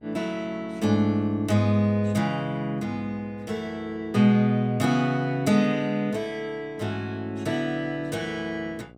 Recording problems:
hum; 60 Hz, harmonics up to 1.2 kHz, SNR 27 dB

